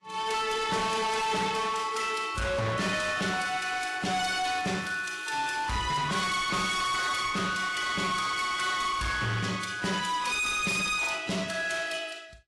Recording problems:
lossy compression; AAC, log-spectral distance 4 dB, nothing above 11.3 kHz
distorted audio; hard clipping, signal-to-distortion ratio 7 dB
crackle; from 3 to 6 s; loose cable, SNR 22 dB

